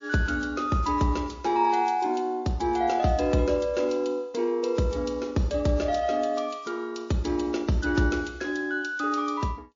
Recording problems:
lossy compression; MP3, log-spectral distance 3 dB, nothing above 6.3 kHz

